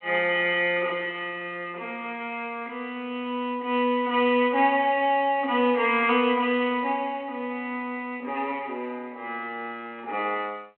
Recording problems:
telephone audio; 280 Hz to 3.3 kHz, G.726

